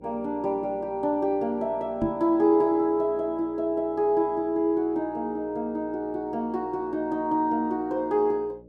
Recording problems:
electrical hum; 60 Hz, harmonics up to 600 Hz, SNR 25 dB
knock on the microphone; at 2 s; peak -2 dB vs average level

